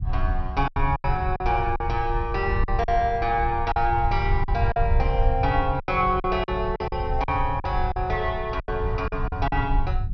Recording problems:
low-pass filter; nothing above 6 kHz
rumble; below 78 Hz, SNR 4 dB
packet loss; 10% of the sound replaced, filled with silence

